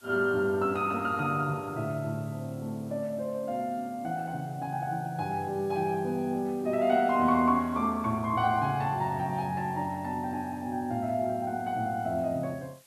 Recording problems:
hiss; slope 0 dB per octave, SNR 27 dB

